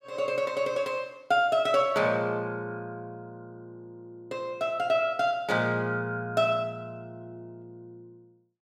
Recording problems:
none

